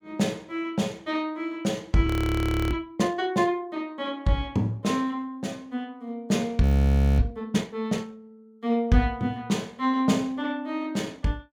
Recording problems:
frozen audio; at 2 s for 0.5 s and at 6.5 s for 0.5 s

